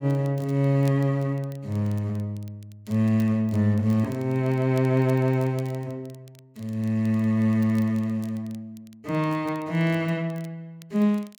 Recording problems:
crackling; vinyl, SNR 29 dB

